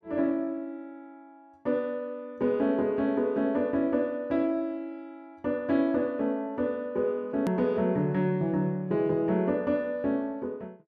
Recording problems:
hard cut with a click; at 7.5 s

